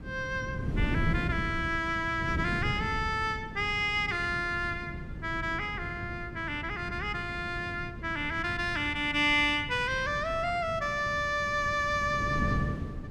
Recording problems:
wind noise; below 210 Hz, SNR 8 dB

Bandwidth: 14 kHz